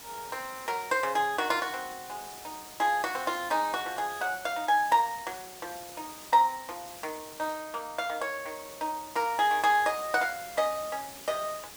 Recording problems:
hiss; slope -1 dB per octave, SNR 15 dB

